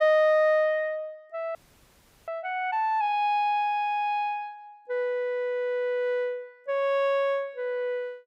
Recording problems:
audio freezing; at 1.5 s for 0.5 s

